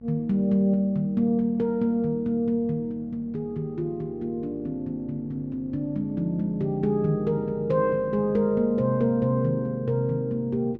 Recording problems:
hum; 50 Hz, harmonics up to 900 Hz, SNR 23 dB

